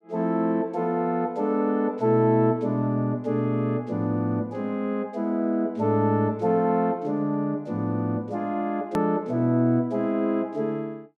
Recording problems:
hard cut with a click; at 9 s

